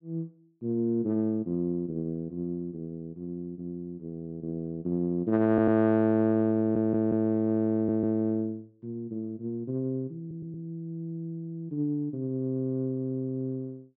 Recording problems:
audio stuttering; 4 times, first at 5.5 s

